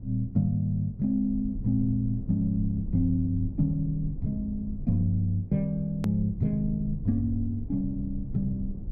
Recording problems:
rumble; below 98 Hz, SNR 11 dB
click at an edit; at 6 s

